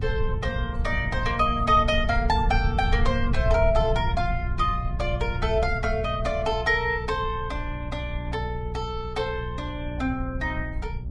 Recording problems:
lossy codec; Vorbis, log-spectral distance 2 dB
electrical hum; 60 Hz, harmonics up to 420 Hz, SNR 9 dB
rumble; below 84 Hz, SNR 5 dB

